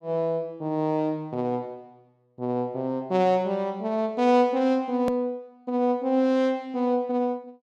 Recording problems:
edit click; at 5 s

